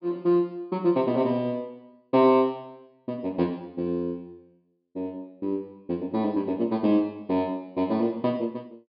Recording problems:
low-pass filter; nothing above 4.9 kHz

